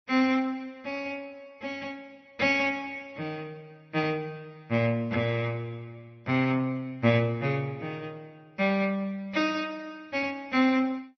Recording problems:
codec artefacts; MP3, then MP2, log-spectral distance 2 dB, nothing above 5 kHz

